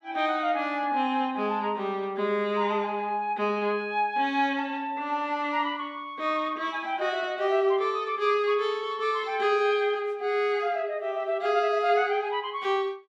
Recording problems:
none

